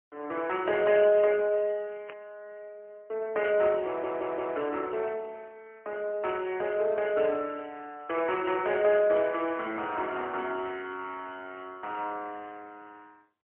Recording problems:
phone line; 260 Hz to 3 kHz, AMR-NB, then MP3
burst of static; at 2 s, at 3.5 s and at 8 s; peak -10 dB vs average level
audio stuttering; at 4 s

